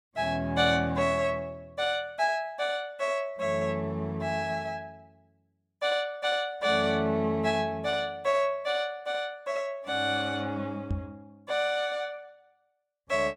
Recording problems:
microphone thump; at 11 s; peak 0 dB vs average level

